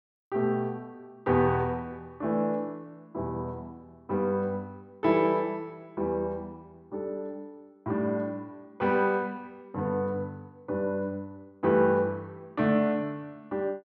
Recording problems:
none

